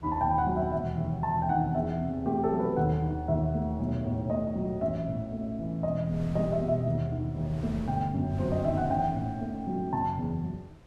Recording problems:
wind on the microphone; below 220 Hz, SNR 19 dB

